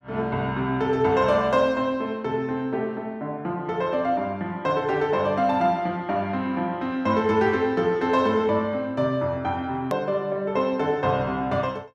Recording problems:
click at an edit; at 10 s

